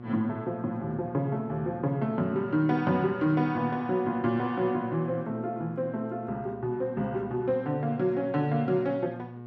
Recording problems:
electrical hum; 60 Hz, harmonics up to 1.4 kHz, SNR 14 dB

